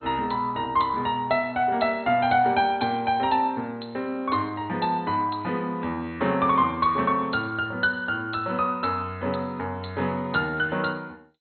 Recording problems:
lossy codec; MP2, log-spectral distance 6 dB, nothing above 4.2 kHz

